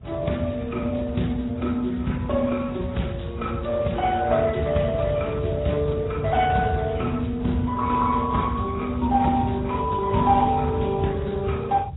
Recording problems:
codec artefacts; Speex, then AAC, log-spectral distance 3 dB, nothing above 3.8 kHz
rumble; below 130 Hz, SNR 8 dB

